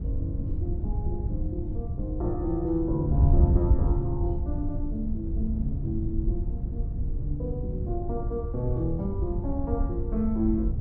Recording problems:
wind on the microphone; below 92 Hz, SNR -2 dB

